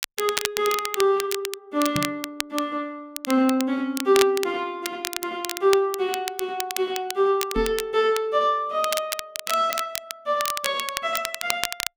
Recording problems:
crackle; vinyl, SNR 6 dB
microphone thump; at 2 s and at 7.5 s; peak 0 dB vs average level

